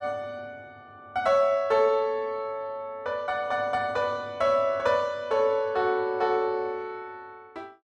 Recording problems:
none

